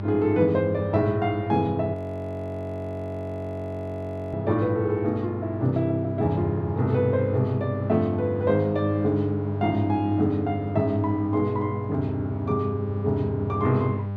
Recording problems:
hum; 50 Hz, harmonics up to 1 kHz, SNR 6 dB
frozen audio; at 2 s for 2.5 s

